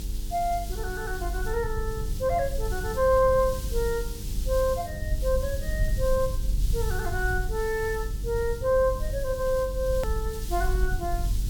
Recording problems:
electrical hum; 50 Hz, harmonics up to 1 kHz, SNR 18 dB
background hiss; slope +4 dB per octave, SNR 14 dB
rumble; below 60 Hz, SNR 4 dB
edit click; at 10 s

